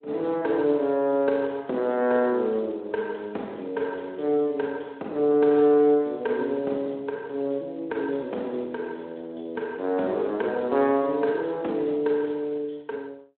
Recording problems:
phone line; 220 Hz to 3.4 kHz, Speex

